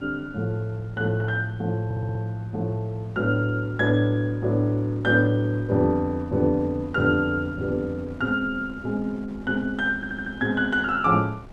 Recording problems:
wind on the microphone; below 410 Hz, SNR 20 dB
stutter; at 2 s and at 10 s

